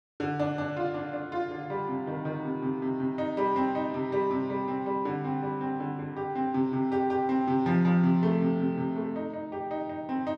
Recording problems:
none

